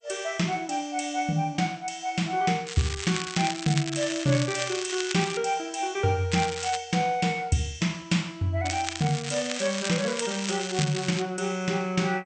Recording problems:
lossy codec; MP2, log-spectral distance 7 dB, nothing above 8.5 kHz
crackle; from 2.5 to 5.5 s, at 6.5 s and from 8.5 to 11 s; loose cable, SNR 7 dB

